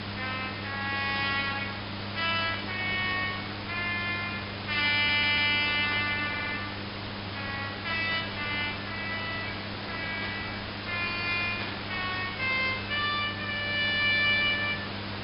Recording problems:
low-pass filter; nothing above 5.5 kHz
hum; 50 Hz, harmonics up to 600 Hz, SNR 13 dB
hiss; SNR 8 dB
static burst; 4 times, first at 2.5 s; peak -5 dB vs average level
audio stuttering; at 5 s and at 6.5 s

